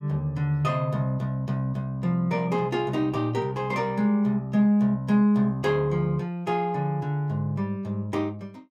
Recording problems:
none

